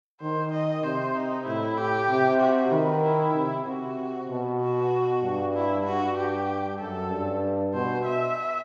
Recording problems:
none

